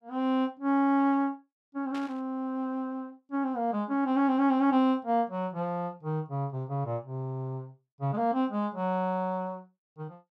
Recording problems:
static burst; at 2 s; peak -11 dB vs average level

